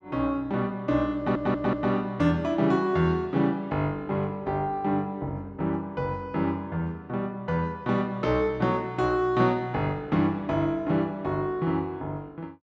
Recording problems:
audio stuttering; at 1 s

